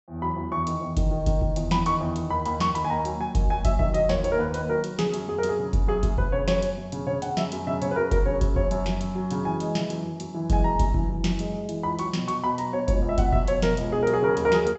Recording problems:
low-pass filter; nothing above 7.7 kHz

